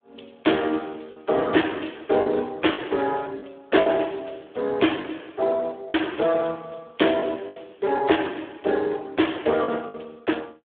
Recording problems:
phone line; 170 Hz to 3.5 kHz, Speex
lost packets; 5% of the sound replaced, filled with the last packet

